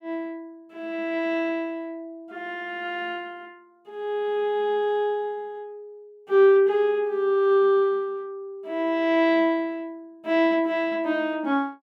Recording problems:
none

